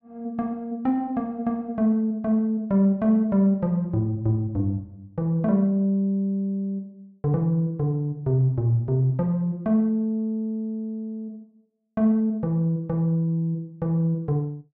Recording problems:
none

